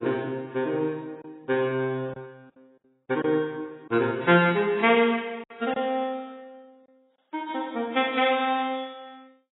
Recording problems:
lossy compression; AAC, log-spectral distance 2 dB, nothing above 3.5 kHz
lost packets; 2% of the sound replaced, filled with silence

